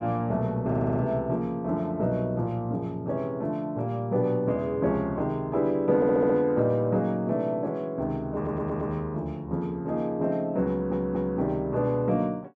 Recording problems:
stutter; 4 times, first at 0.5 s

